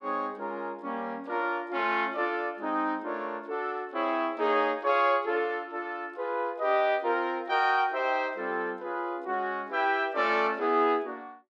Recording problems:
none

